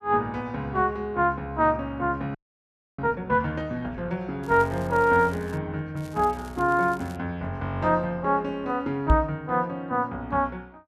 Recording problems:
audio freezing; at 2.5 s for 0.5 s
crackling; from 4.5 to 5.5 s and from 6 to 7 s; loose cable, SNR 25 dB
knock on the microphone; at 9 s; peak +8 dB vs average level

